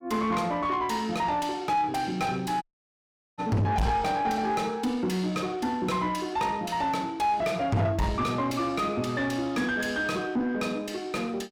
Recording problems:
distorted audio; soft clipping, signal-to-distortion ratio 7 dB
dropout; at 2.5 s for 1 s

